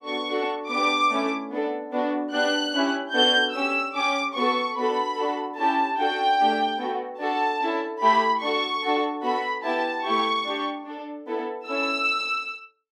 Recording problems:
none

